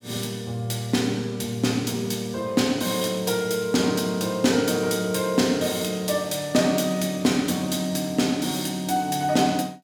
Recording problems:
none

